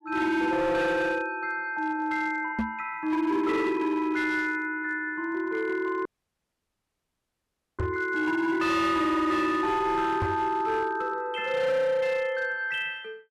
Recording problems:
distorted audio; hard clipping, signal-to-distortion ratio 11 dB
microphone bump; at 2.5 s, at 8 s and at 10 s; peak +2 dB vs average level
audio cutting out; at 6 s for 1.5 s

